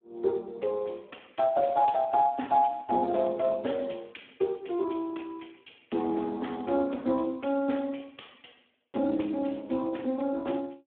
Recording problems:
telephone audio; 220 Hz to 3.5 kHz, Speex

